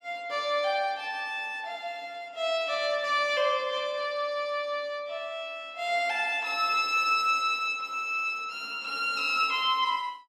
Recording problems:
none

